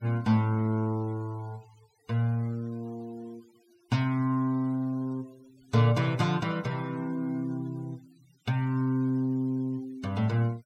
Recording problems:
noise reduction artefacts; signal-to-artefact ratio 27 dB

